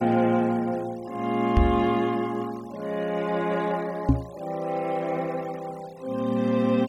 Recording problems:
noise reduction artefacts; signal-to-artefact ratio 22 dB
microphone bump; at 1.5 s and at 4 s; peak +10 dB vs average level

